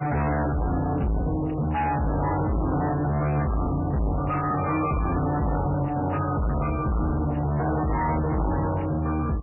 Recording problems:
lossy codec; MP3, log-spectral distance 4 dB, nothing above 2.4 kHz
distorted audio; soft clipping, signal-to-distortion ratio 6 dB

